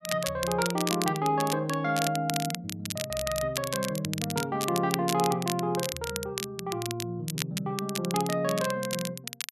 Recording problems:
crackle; vinyl, SNR 5 dB

